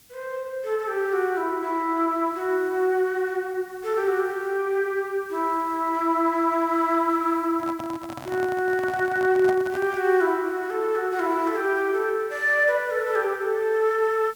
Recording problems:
hiss; SNR 27 dB
handling noise; from 7.5 to 10 s; peak -6 dB vs average level

